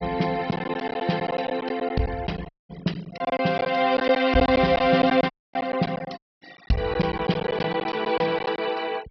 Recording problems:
treble cut off; nothing above 5.5 kHz
denoising artefacts; signal-to-artefact ratio 22 dB
lost packets; 11% of the sound replaced, filled with silence
dropout; at 2.5 s, at 5.5 s and at 6 s

